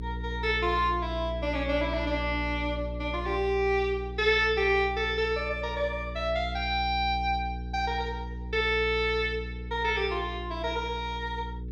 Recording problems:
electrical hum; 60 Hz, harmonics up to 480 Hz, SNR 9 dB

